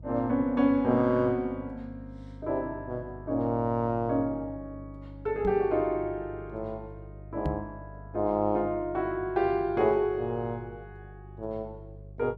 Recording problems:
hum; 50 Hz, harmonics up to 350 Hz, SNR 17 dB
knock on the microphone; at 5.5 s and at 7.5 s; peak 0 dB vs average level

